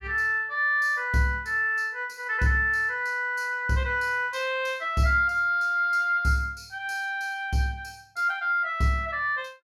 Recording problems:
none

